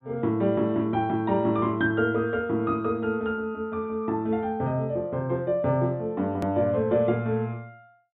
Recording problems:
treble missing; nothing above 4 kHz
click at an edit; at 6.5 s

